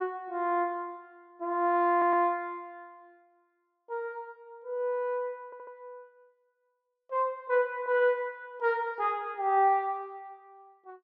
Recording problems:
audio stuttering; at 2 s and at 5.5 s

